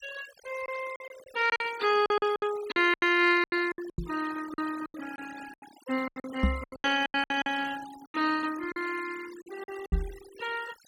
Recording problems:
denoising artefacts; signal-to-artefact ratio 16 dB
lost packets; 15% of the sound replaced, filled with silence
knock on the microphone; at 4 s, at 6.5 s and at 10 s; peak +7 dB vs average level

